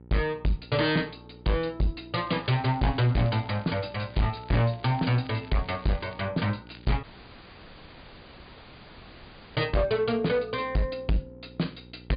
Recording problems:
treble cut off; nothing above 4.9 kHz
distorted audio; hard clipping, uneven, signal-to-distortion ratio 5 dB
hum; 60 Hz, harmonics up to 960 Hz, SNR 22 dB
crackling; from 2.5 to 6.5 s and at 6.5 s; loose cable, SNR 24 dB
dropout; at 7 s for 2.5 s

